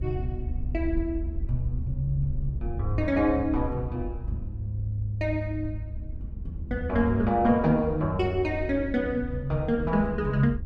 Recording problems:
low-frequency rumble; below 72 Hz, SNR 8 dB

